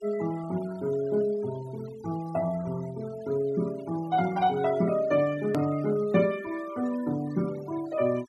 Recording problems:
denoising artefacts; signal-to-artefact ratio 20 dB
edit click; at 5.5 s

